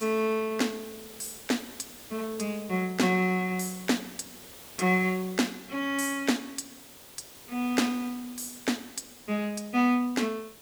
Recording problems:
hiss; slope -2 dB per octave, SNR 17 dB

